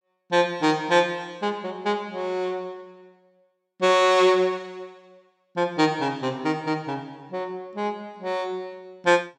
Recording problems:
none

